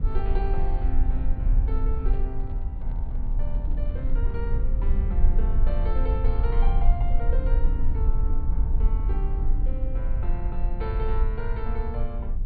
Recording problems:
treble missing; nothing above 4.6 kHz
low-frequency rumble; below 50 Hz, SNR -10 dB
handling noise; from 2 to 4.5 s; peak -8 dB vs average level

